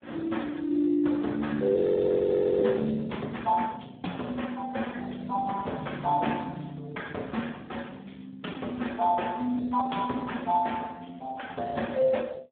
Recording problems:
telephone audio; 190 Hz to 3.6 kHz, Speex
frozen audio; at 2 s for 1 s

